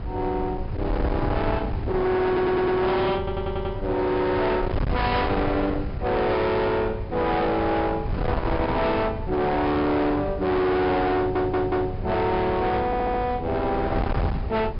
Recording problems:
low-pass filter; nothing above 5.5 kHz
distortion; hard clipping, uneven, signal-to-distortion ratio 7 dB
mains hum; 50 Hz, harmonics up to 800 Hz, SNR 18 dB
wind on the microphone; below 390 Hz, SNR 7 dB
stutter; 4 times, first at 2.5 s

